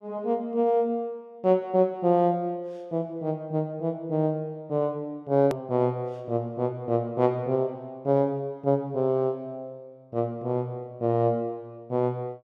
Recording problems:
edit click; at 5.5 s

